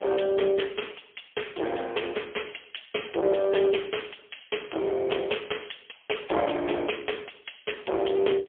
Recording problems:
phone line; 300 Hz to 3.3 kHz, AMR-NB, then MP3
distortion; hard clipping, uneven, signal-to-distortion ratio 8 dB

